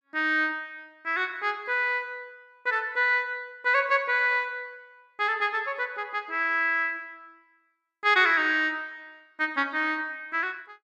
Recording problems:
none

